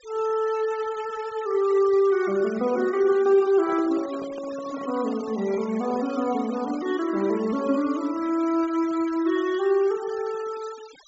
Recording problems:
low-pass filter; nothing above 8 kHz
denoising artefacts; signal-to-artefact ratio 20 dB
handling noise; from 3.5 to 7 s; peak -13 dB vs average level

